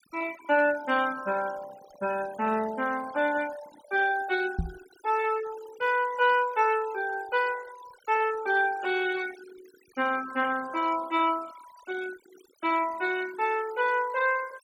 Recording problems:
denoising artefacts; signal-to-artefact ratio 18 dB
microphone bump; at 4.5 s; peak +1 dB vs average level

